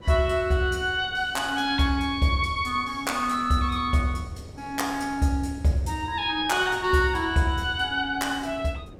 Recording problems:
wind on the microphone; below 450 Hz, SNR 21 dB

